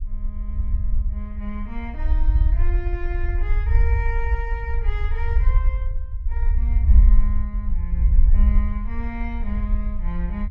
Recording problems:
rumble; below 60 Hz, SNR -12 dB

